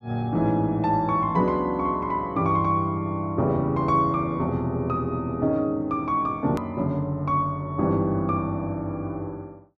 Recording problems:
edit click; at 6.5 s

